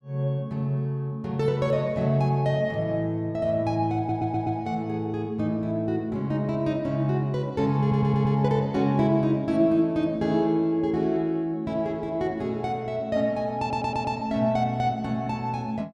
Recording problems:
stutter; at 4 s, at 8 s and at 14 s

